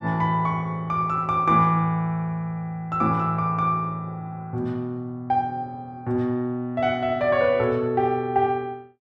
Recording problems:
none

